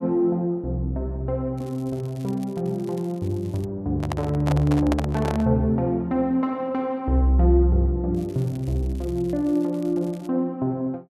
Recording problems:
crackle; from 1.5 to 3.5 s and from 8 to 10 s; loose cable, SNR 28 dB
handling noise; from 4 to 5.5 s; peak +1 dB vs average level

